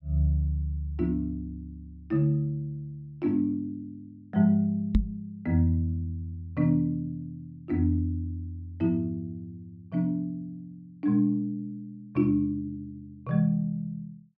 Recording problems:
microphone bump; at 5 s; peak +8 dB vs average level

